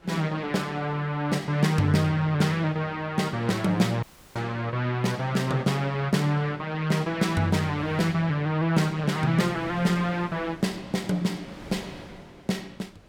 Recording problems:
wind on the microphone; below 1.3 kHz, SNR 24 dB
dropout; at 4 s

